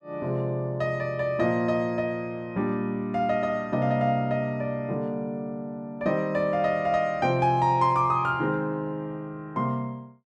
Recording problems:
none

